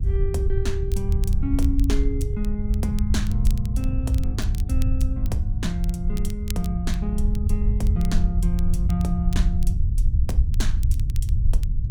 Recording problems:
low-frequency rumble; below 76 Hz, SNR -5 dB
crackle; vinyl, SNR 16 dB

